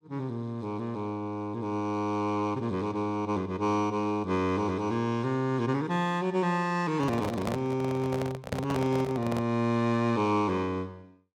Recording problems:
microphone handling noise; from 7 to 9.5 s; peak 0 dB vs average level

